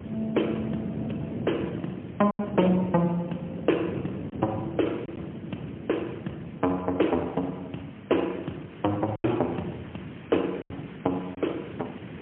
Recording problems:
phone line; 220 Hz to 3.3 kHz, AMR-NB, then MP3
hiss; SNR 23 dB
wind noise; below 370 Hz, SNR 9 dB
packet loss; 3% of the sound replaced, filled with silence

